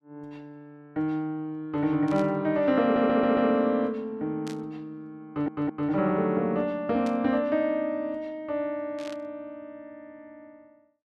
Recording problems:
burst of static; 4 times, first at 2 s; peak -12 dB vs average level
audio stuttering; at 3 s and at 5.5 s

